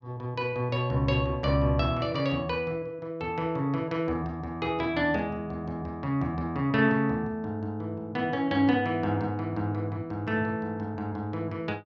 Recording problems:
none

